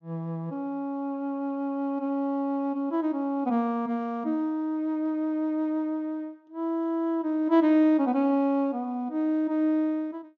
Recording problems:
treble cut off; nothing above 8 kHz

